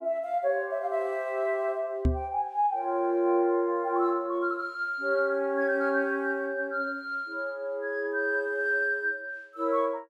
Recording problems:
microphone thump; at 2 s; peak +6 dB vs average level

